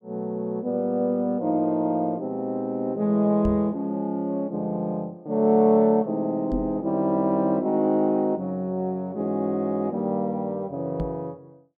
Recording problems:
knock on the microphone; at 3.5 s, at 6.5 s and at 11 s; peak -1 dB vs average level

